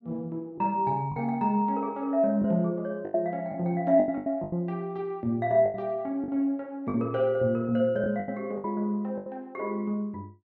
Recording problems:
lost packets; 8% of the sound replaced, filled with the last packet

